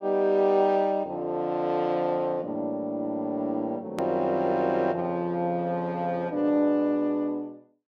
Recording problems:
click at an edit; at 4 s

